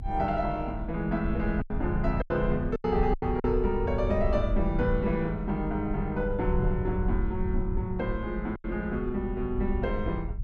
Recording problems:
rumble; below 74 Hz, SNR 5 dB
packet loss; 4% of the sound replaced, filled with silence

